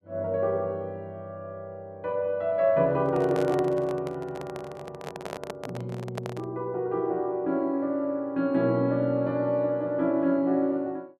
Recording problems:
microphone handling noise; from 3 to 6.5 s; peak -4 dB vs average level

